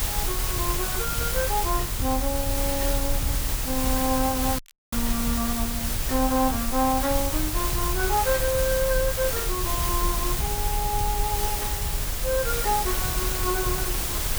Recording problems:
hum; 60 Hz, harmonics up to 360 Hz, SNR 22 dB
background hiss; slope -1 dB per octave, SNR -1 dB
rumble; below 64 Hz, strongest tone 36 Hz, SNR 5 dB
crackle; vinyl, SNR 24 dB
dropout; at 4.5 s

